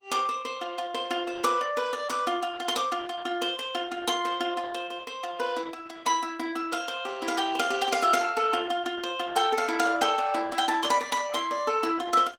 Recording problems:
lossy compression; Opus, log-spectral distance 5 dB, nothing above 19 kHz

